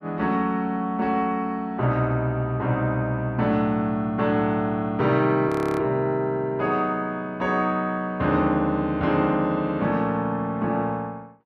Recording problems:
frozen audio; at 5.5 s

